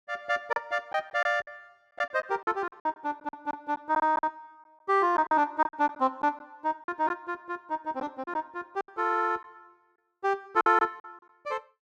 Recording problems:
lost packets; 10% of the sound replaced, filled with silence

